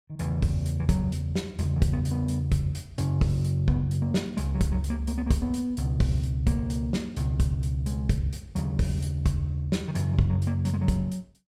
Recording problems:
none

